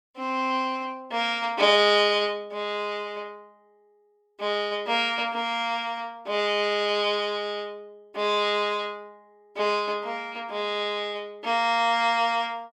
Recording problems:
none

